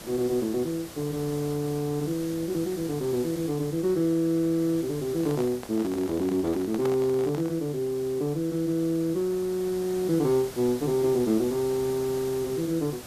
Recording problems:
hiss; slope -3 dB per octave, SNR 15 dB
microphone handling noise; from 5 to 7.5 s; peak -5 dB vs average level

